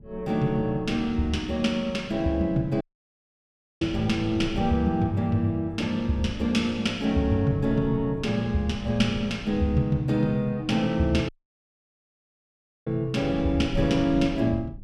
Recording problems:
low-frequency rumble; below 150 Hz, SNR 15 dB
audio cutting out; at 3 s for 1 s and at 11 s for 1.5 s

